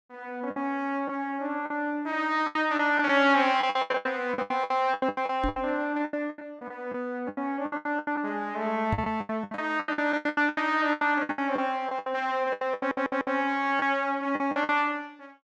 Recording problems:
lost packets; 18% of the sound replaced, filled with the last packet
microphone bump; at 5.5 s and at 9 s; peak +2 dB vs average level
audio stuttering; at 13 s

